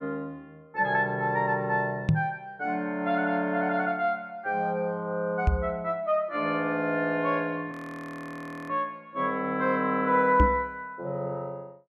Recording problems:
knock on the microphone; at 2 s, at 5.5 s and at 10 s; peak +8 dB vs average level
frozen audio; at 7.5 s for 1 s

